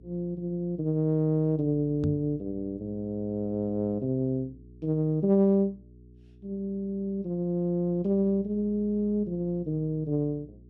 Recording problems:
hum; 60 Hz, harmonics up to 420 Hz, SNR 23 dB
microphone thump; at 2 s; peak +3 dB vs average level

